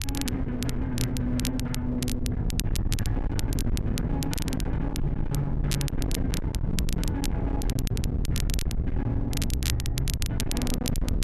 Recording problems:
distorted audio; hard clipping, signal-to-distortion ratio 8 dB
wind noise; below 130 Hz, SNR 1 dB
crackling; vinyl, SNR 7 dB

